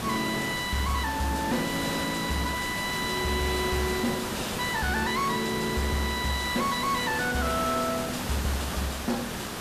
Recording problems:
distortion; soft clipping, signal-to-distortion ratio 12 dB
hiss; slope -4 dB per octave, SNR 4 dB

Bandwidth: 14.5 kHz